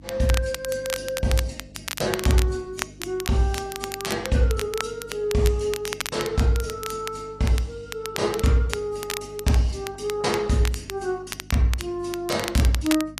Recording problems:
lossy codec; AAC, log-spectral distance 2 dB, nothing above 11.3 kHz
hum; 50 Hz, harmonics up to 300 Hz, SNR 22 dB
crackling; vinyl, SNR 9 dB

